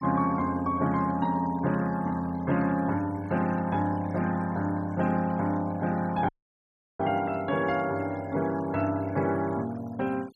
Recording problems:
noise reduction artefacts; signal-to-artefact ratio 22 dB
audio cutting out; at 6.5 s for 0.5 s

